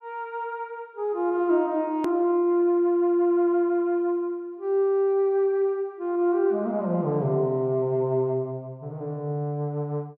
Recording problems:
hard cut with a click; at 2 s

